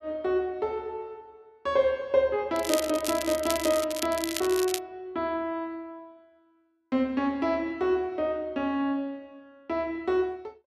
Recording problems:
crackling; from 2.5 to 5 s; loose cable, SNR 6 dB

